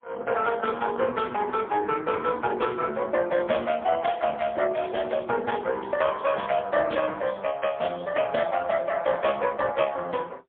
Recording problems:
telephone audio; 300 Hz to 3.4 kHz, AMR-NB, then MP3

